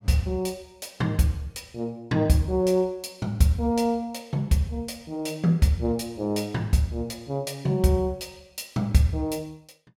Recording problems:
none

